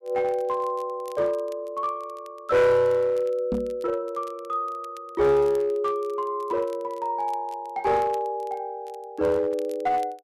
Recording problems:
distorted audio; hard clipping, uneven, signal-to-distortion ratio 10 dB
crackling; vinyl, SNR 29 dB
microphone bump; at 3.5 s; peak 0 dB vs average level

